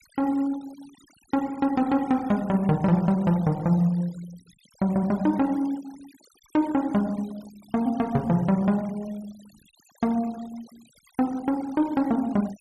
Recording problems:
noise reduction artefacts; signal-to-artefact ratio 24 dB

